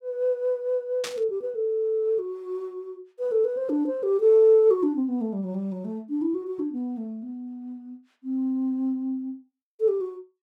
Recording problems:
static burst; at 1 s; peak -3 dB vs average level

